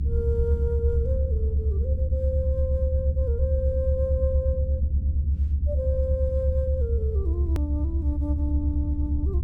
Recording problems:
low-frequency rumble; below 76 Hz, strongest tone 74 Hz, SNR -7 dB
hard cut with a click; at 7.5 s

